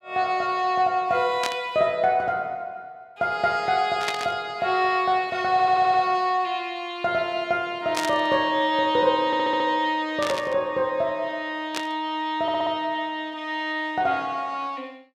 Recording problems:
static burst; 5 times, first at 1.5 s; peak 0 dB vs average level
audio stuttering; at 5.5 s, at 9.5 s and at 12 s

